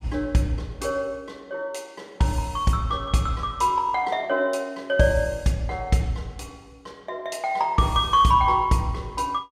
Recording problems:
none

